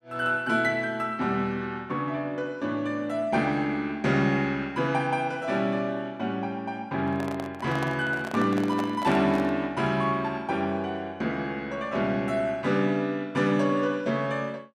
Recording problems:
microphone handling noise; from 7 to 9.5 s; peak -3 dB vs average level

